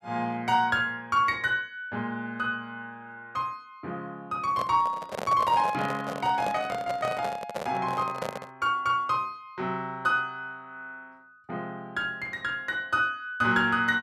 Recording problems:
handling noise; from 4.5 to 8.5 s; peak -1 dB vs average level

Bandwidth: 14 kHz